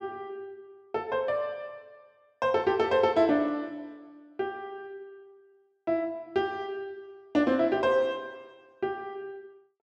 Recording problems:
none

